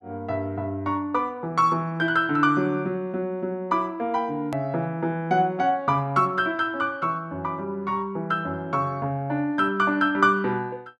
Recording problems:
hard cut with a click; at 4.5 s

